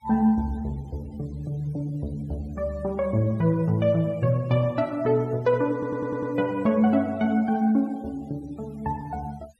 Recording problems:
denoising artefacts; signal-to-artefact ratio 27 dB
stutter; at 5.5 s

